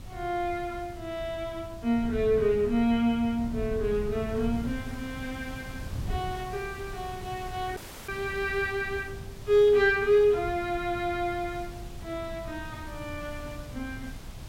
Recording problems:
background hiss; slope -3 dB per octave, SNR 21 dB
wind on the microphone; below 130 Hz, SNR 13 dB
dropout; at 8 s

